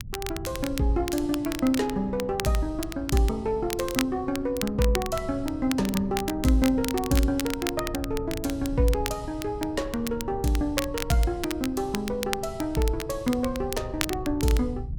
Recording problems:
rumble; below 120 Hz, SNR 13 dB
crackling; vinyl, SNR 9 dB

